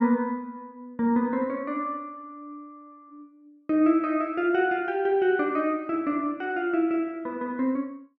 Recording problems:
none

